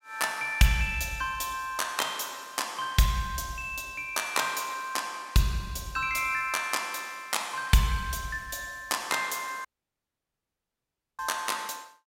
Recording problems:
audio cutting out; at 9.5 s for 1.5 s

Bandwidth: 16 kHz